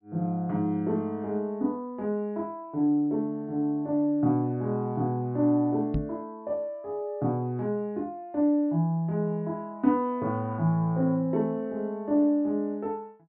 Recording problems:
treble missing; nothing above 5.1 kHz
microphone bump; at 6 s; peak +3 dB vs average level

